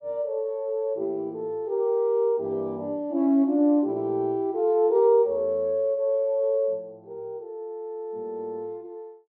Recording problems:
treble cut off; nothing above 7.1 kHz

